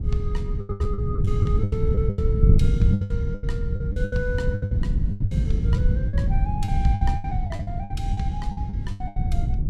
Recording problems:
wind on the microphone; below 120 Hz, SNR -9 dB
packet loss; 17% of the sound replaced, filled with the last packet

